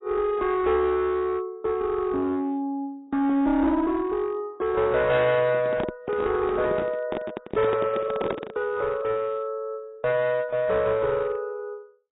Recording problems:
codec artefacts; AAC, log-spectral distance 2 dB, nothing above 3.8 kHz
distorted audio; hard clipping, uneven, signal-to-distortion ratio 10 dB
microphone handling noise; from 5.5 to 8.5 s; peak +1 dB vs average level

